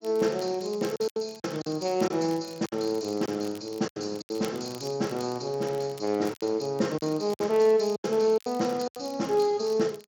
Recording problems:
lossy codec; Speex, log-spectral distance 3 dB
crackle; vinyl, SNR 24 dB
packet loss; 9% of the sound replaced, filled with silence

